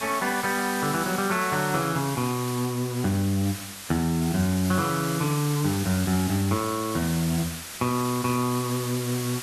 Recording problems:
hiss; slope 0 dB per octave, SNR 8 dB

